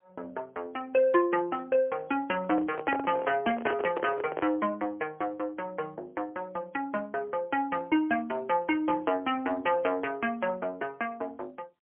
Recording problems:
telephone audio; 280 Hz to 3.1 kHz, AMR-NB, then MP3
handling noise; from 2.5 to 4.5 s; peak 0 dB vs average level

